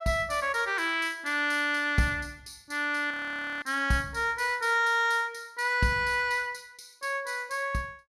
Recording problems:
frozen audio; at 3 s for 0.5 s

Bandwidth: 14.5 kHz